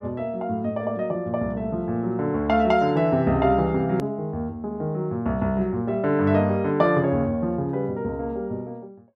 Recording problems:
hard cut with a click; at 4 s

